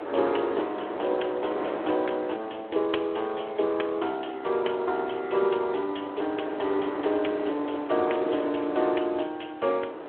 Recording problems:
phone line; 260 Hz to 3.6 kHz, Speex
wind on the microphone; below 830 Hz, SNR 9 dB

